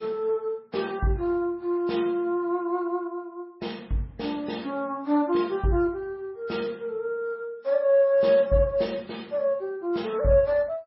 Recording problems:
lossy codec; MP3, log-spectral distance 2 dB, nothing above 5.5 kHz

